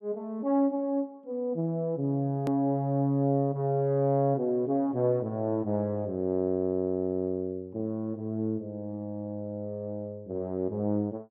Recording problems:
edit click; at 2.5 s

